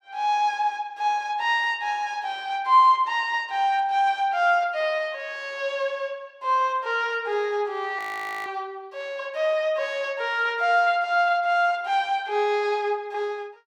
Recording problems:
audio freezing; at 8 s

